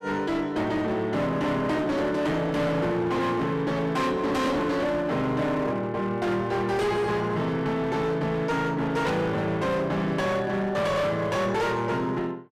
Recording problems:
distortion; hard clipping, uneven, signal-to-distortion ratio 8 dB
burst of static; at 9 s; peak -8 dB vs average level

